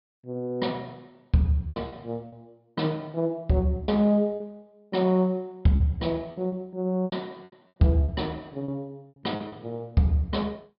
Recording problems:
treble missing; nothing above 5.5 kHz
packet loss; 7% of the sound replaced, filled with repeated pitch periods

